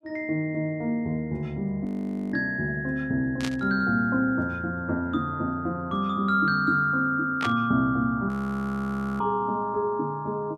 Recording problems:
frozen audio; at 2 s and at 8.5 s for 1 s
burst of static; at 3.5 s and at 7.5 s; peak -2 dB vs average level

